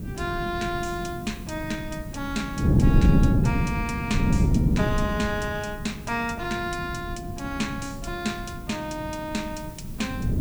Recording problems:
background hiss; slope -1 dB per octave, SNR 19 dB
wind on the microphone; below 210 Hz, SNR -4 dB

